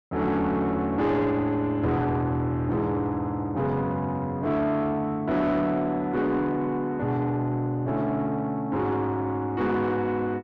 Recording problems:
distorted audio; soft clipping, signal-to-distortion ratio 10 dB

